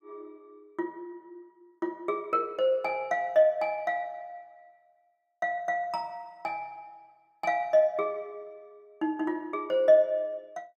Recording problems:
none

